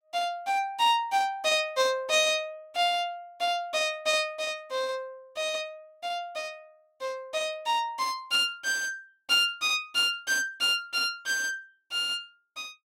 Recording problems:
none

